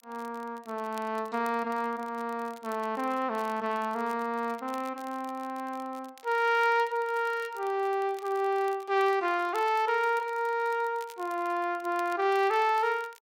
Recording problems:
crackling; vinyl, SNR 25 dB

